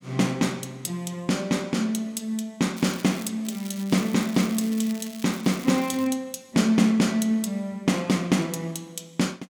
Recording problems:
crackle; at 3 s and from 3.5 to 6 s; loose cable, SNR 17 dB

